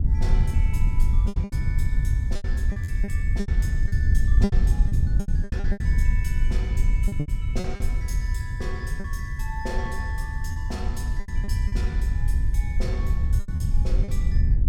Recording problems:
wind on the microphone; below 78 Hz, SNR -12 dB
lost packets; 10% of the sound replaced, filled with repeated pitch periods

